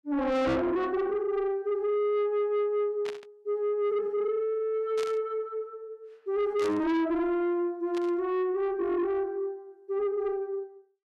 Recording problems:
distorted audio; soft clipping, signal-to-distortion ratio 7 dB
static burst; 4 times, first at 3 s; peak -8 dB vs average level

